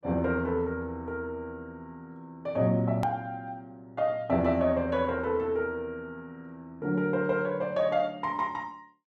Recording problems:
hard cut with a click; at 3 s

